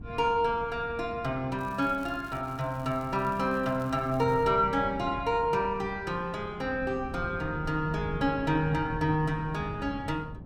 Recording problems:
wind on the microphone; below 200 Hz, SNR 13 dB
crackle; from 1.5 to 4.5 s; loose cable, SNR 27 dB

